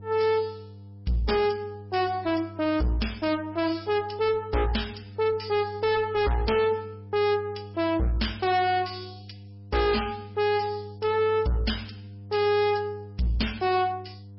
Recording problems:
lossy compression; MP3, log-spectral distance 4 dB, nothing above 5.3 kHz
distorted audio; hard clipping, uneven, signal-to-distortion ratio 5 dB
mains hum; 50 Hz, harmonics up to 500 Hz, SNR 17 dB

